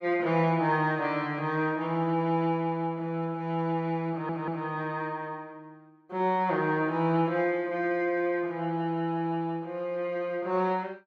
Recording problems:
audio stuttering; at 4 s

